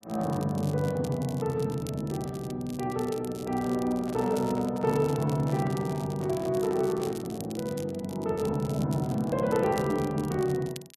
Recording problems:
crackle; vinyl, SNR 18 dB
handling noise; from 4 to 7.5 s; peak -10 dB vs average level

